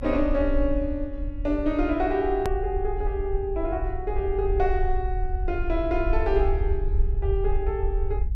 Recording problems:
rumble; below 58 Hz, SNR 3 dB
hard cut with a click; at 2.5 s

